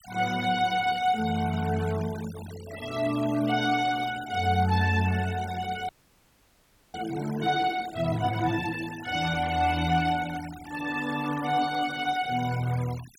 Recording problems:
noise reduction artefacts; signal-to-artefact ratio 16 dB
frozen audio; at 6 s for 1 s

